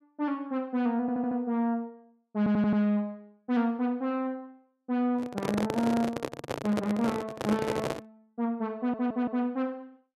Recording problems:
audio stuttering; at 1 s, at 2.5 s and at 9 s
microphone handling noise; from 5 to 8 s; peak +2 dB vs average level

